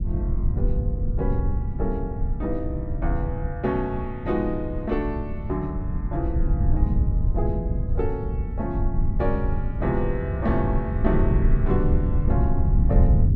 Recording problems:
low-frequency rumble; below 96 Hz, SNR -3 dB

